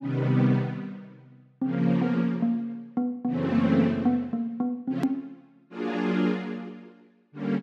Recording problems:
hard cut with a click; at 5 s

